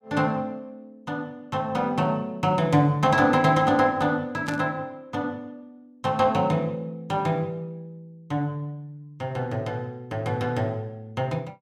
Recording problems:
static burst; at 4.5 s; peak -7 dB vs average level

